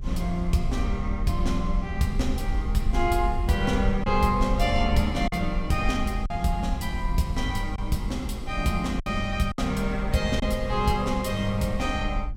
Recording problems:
rumble; below 56 Hz, SNR 6 dB
lost packets; 2% of the sound replaced, filled with silence

